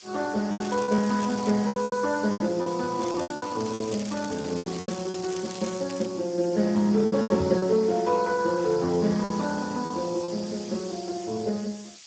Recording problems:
lossy compression; Speex, log-spectral distance 11 dB
background hiss; slope +4 dB per octave, SNR 17 dB
lost packets; 10% of the sound replaced, filled with repeated pitch periods
crackling; at 0.5 s and from 3 to 6 s; loose cable, SNR 15 dB
knock on the microphone; at 7.5 s; peak -3 dB vs average level

